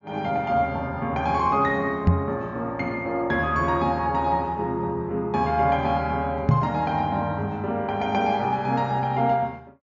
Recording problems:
treble missing; nothing above 7.3 kHz
microphone bump; at 2 s and at 6.5 s; peak +9 dB vs average level

